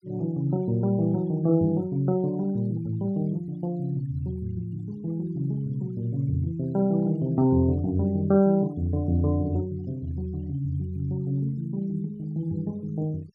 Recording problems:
noise reduction artefacts; signal-to-artefact ratio 28 dB

